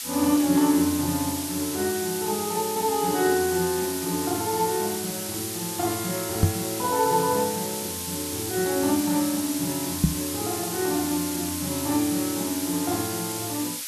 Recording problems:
background hiss; slope +5 dB per octave, SNR 4 dB
knock on the microphone; at 6.5 s and at 10 s; peak +10 dB vs average level

